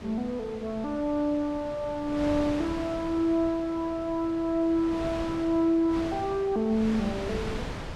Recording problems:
wind noise; below 1.2 kHz, SNR 11 dB

